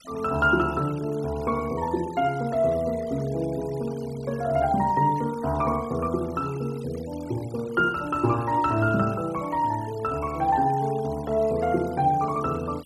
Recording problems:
denoising artefacts; signal-to-artefact ratio 22 dB

